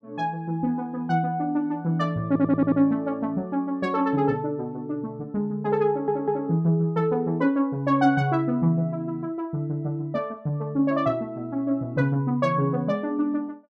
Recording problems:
audio stuttering; at 2.5 s and at 6 s

